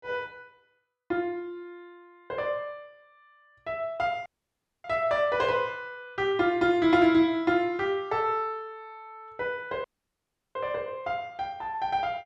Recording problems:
audio cutting out; at 4.5 s for 0.5 s and at 10 s for 0.5 s

